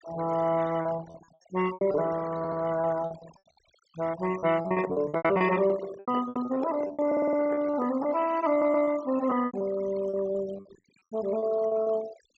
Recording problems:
treble missing; nothing above 8 kHz
denoising artefacts; signal-to-artefact ratio 16 dB
lost packets; 16% of the sound replaced, filled with repeated pitch periods
stutter; at 2.5 s, at 7 s and at 8.5 s
handling noise; from 4.5 to 8 s; peak -2 dB vs average level

